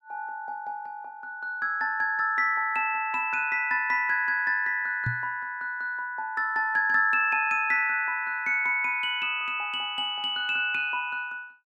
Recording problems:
microphone thump; at 5 s; peak -1 dB vs average level

